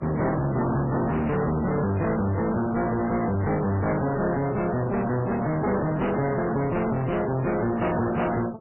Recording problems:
lossy compression; MP3, then AAC, log-spectral distance 4 dB, nothing above 2.9 kHz
distorted audio; soft clipping, signal-to-distortion ratio 5 dB

